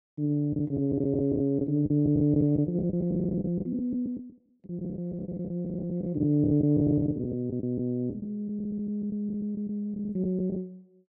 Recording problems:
packet loss; 15% of the sound replaced, filled with the last packet

